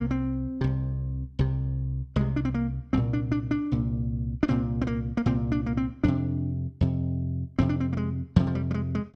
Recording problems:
none

